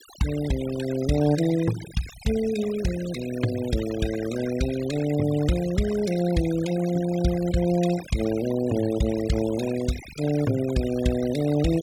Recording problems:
denoising artefacts; signal-to-artefact ratio 13 dB

